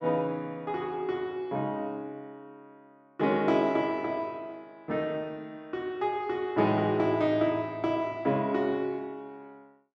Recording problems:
none

